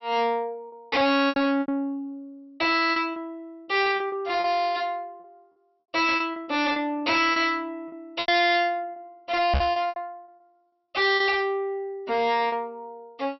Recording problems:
treble missing; nothing above 5.7 kHz
distortion; soft clipping, signal-to-distortion ratio 6 dB
lost packets; 10% of the sound replaced, filled with repeated pitch periods
microphone thump; at 9.5 s; peak +4 dB vs average level

